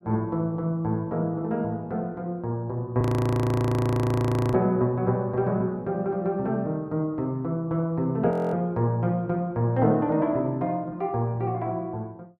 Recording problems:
audio freezing; at 3 s for 1.5 s and at 8.5 s

